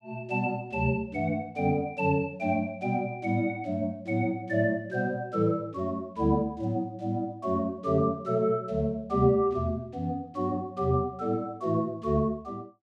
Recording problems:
none

